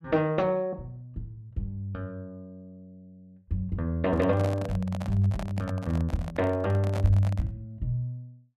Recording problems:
handling noise; from 4 to 7.5 s; peak -3 dB vs average level

